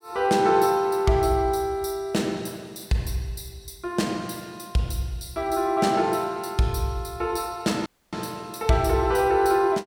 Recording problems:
dropout; at 8 s

